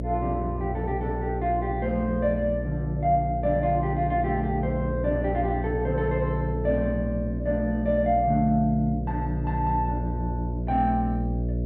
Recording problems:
hum; 60 Hz, harmonics up to 660 Hz, SNR 4 dB

